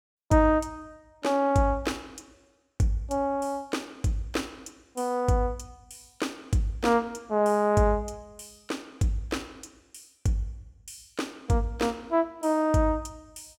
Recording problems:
none

